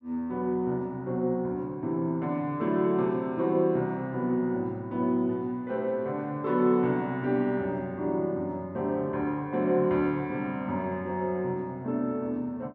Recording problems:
none

